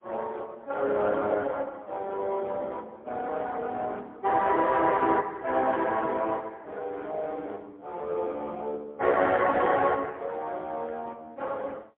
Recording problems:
telephone audio; 220 Hz to 3.3 kHz, AMR-NB, then MP3

